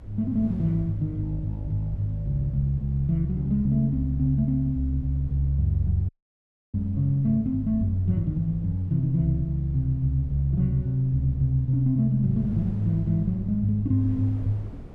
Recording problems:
rumble; below 84 Hz, strongest tone 26 Hz, SNR 21 dB
wind on the microphone; below 250 Hz, SNR 22 dB
audio cutting out; at 6 s for 0.5 s

